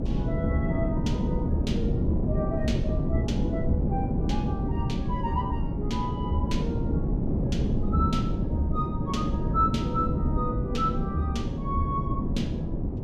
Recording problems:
wind noise; below 250 Hz, SNR -3 dB

